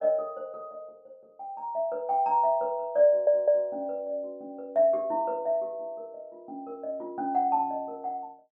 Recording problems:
audio stuttering; at 3 s

